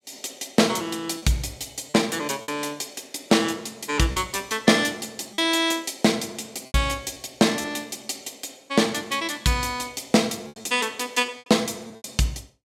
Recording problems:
packet loss; 5% of the sound replaced, filled with repeated pitch periods

